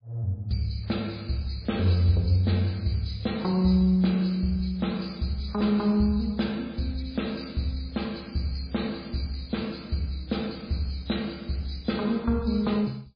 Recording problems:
lossy compression; MP3, log-spectral distance 7 dB, nothing above 4.8 kHz

